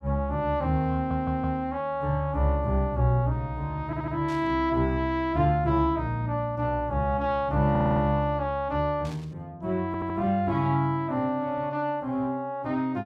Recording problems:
stutter; 4 times, first at 1 s
burst of static; at 4.5 s and at 9 s; peak -16 dB vs average level

